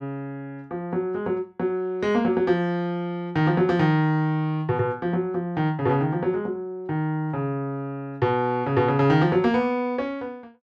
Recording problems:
none

